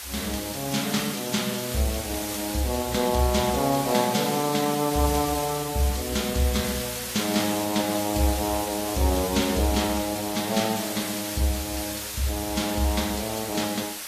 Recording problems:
lossy codec; AAC, log-spectral distance 12 dB
background hiss; SNR 5 dB

